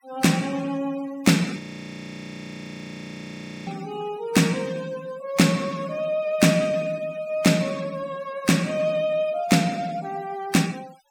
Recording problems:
noise reduction artefacts; signal-to-artefact ratio 21 dB
frozen audio; at 1.5 s for 2 s

